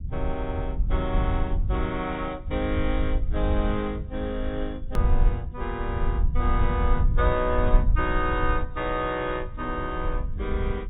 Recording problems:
treble missing; nothing above 4 kHz
low-frequency rumble; below 68 Hz, SNR -1 dB
edit click; at 5 s

